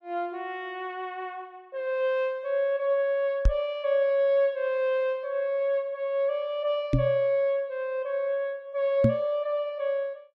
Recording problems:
microphone thump; at 3.5 s, at 7 s and at 9 s; peak +8 dB vs average level

